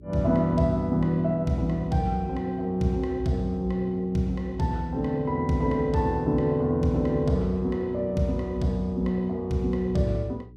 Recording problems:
hum; 60 Hz, harmonics up to 420 Hz, SNR 22 dB

